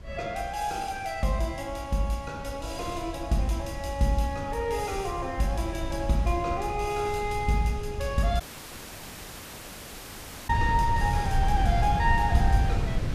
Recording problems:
wind noise; below 110 Hz, SNR 4 dB
audio cutting out; at 8.5 s for 2 s

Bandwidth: 14.5 kHz